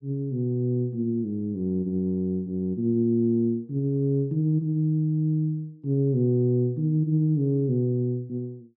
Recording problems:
none

